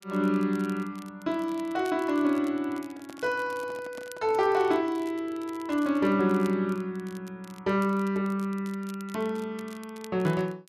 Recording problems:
crackling; vinyl, SNR 24 dB
microphone handling noise; from 3 to 4.5 s; peak -13 dB vs average level

